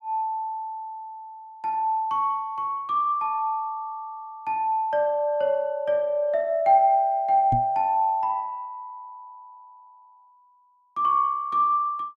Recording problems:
microphone bump; at 7.5 s; peak 0 dB vs average level

